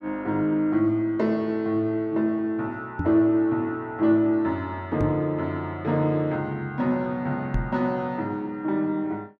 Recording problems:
knock on the microphone; at 3 s, at 5 s and at 7.5 s; peak +2 dB vs average level

